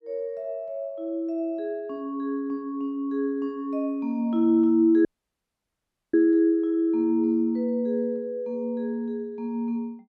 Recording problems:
audio cutting out; at 5 s for 1 s

